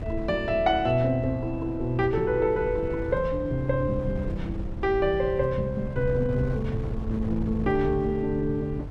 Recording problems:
wind on the microphone; below 130 Hz, SNR 9 dB

